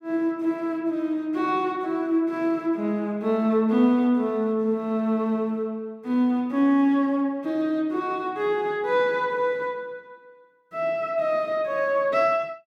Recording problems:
none

